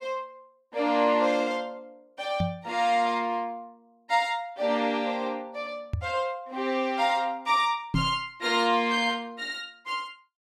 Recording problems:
microphone thump; at 2.5 s, at 6 s and at 8 s; peak +4 dB vs average level

